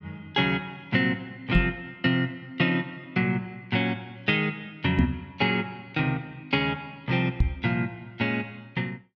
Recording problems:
microphone bump; at 1.5 s, at 5 s and at 7.5 s; peak +9 dB vs average level

